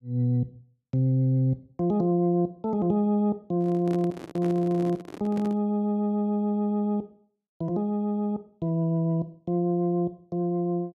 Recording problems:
microphone handling noise; from 3.5 to 5.5 s; peak -7 dB vs average level

